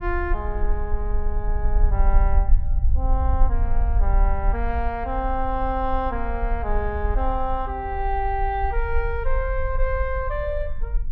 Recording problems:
rumble; below 50 Hz, strongest tone 20 Hz, SNR -1 dB

